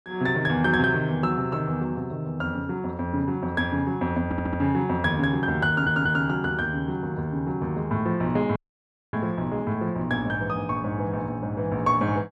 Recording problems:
stutter; at 4.5 s and at 5.5 s
audio cutting out; at 8.5 s for 0.5 s

